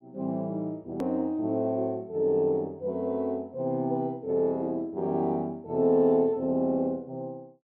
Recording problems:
edit click; at 1 s

